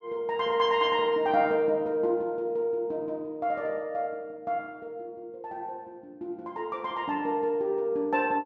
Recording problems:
none

